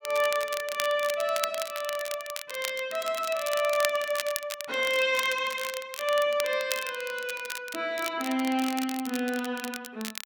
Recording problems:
crackle; vinyl, SNR 8 dB

